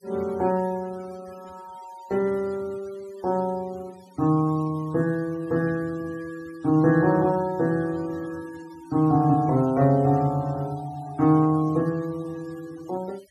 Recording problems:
noise reduction artefacts; signal-to-artefact ratio 25 dB

